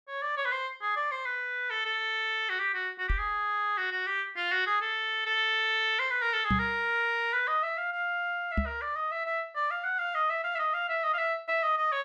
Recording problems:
microphone thump; at 3 s, at 6.5 s and at 8.5 s; peak +3 dB vs average level

